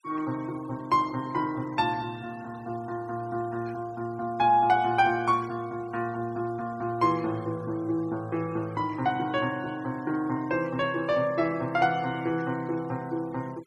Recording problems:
denoising artefacts; signal-to-artefact ratio 23 dB

